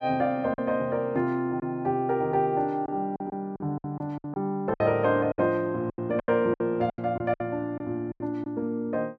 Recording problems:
packet loss; 11% of the sound replaced, filled with silence

